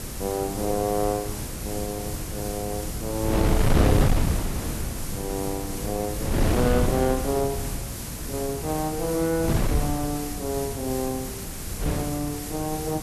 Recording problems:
background hiss; slope +1 dB per octave, SNR 7 dB
wind on the microphone; below 270 Hz, SNR 0 dB

